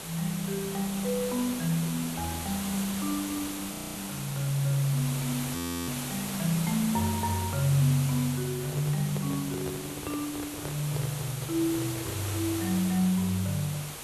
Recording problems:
background hiss; slope -2 dB per octave, SNR 6 dB
audio freezing; at 3.5 s and at 5.5 s
handling noise; from 8.5 to 13 s; peak -5 dB vs average level

